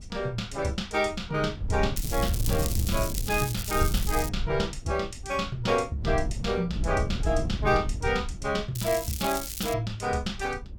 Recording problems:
wind noise; below 110 Hz, SNR 5 dB
crackling; from 2 to 4.5 s and at 9 s; loose cable, SNR 6 dB

